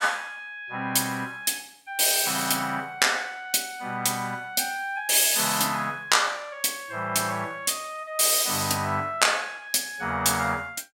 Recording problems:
none

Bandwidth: 17 kHz